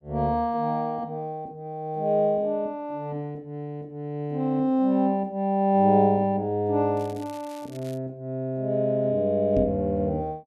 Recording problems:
crackle; from 7 to 8 s; loose cable, SNR 25 dB
knock on the microphone; at 9.5 s; peak +1 dB vs average level

